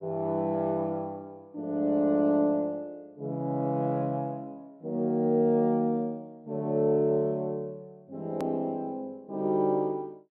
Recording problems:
click at an edit; at 8.5 s

